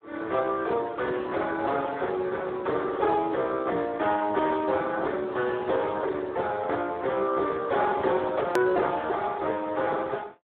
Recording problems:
phone line; 280 Hz to 3.9 kHz, Speex
edit click; at 8.5 s

